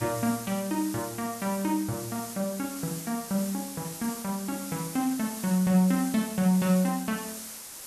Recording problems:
background hiss; SNR 10 dB

